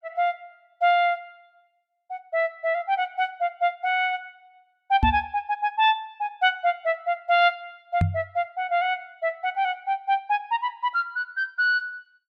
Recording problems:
microphone thump; at 5 s and at 8 s; peak +6 dB vs average level

